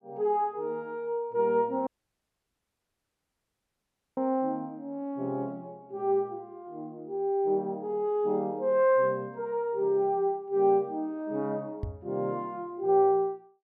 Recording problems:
dropout; at 2 s for 2.5 s
microphone bump; at 12 s; peak -2 dB vs average level

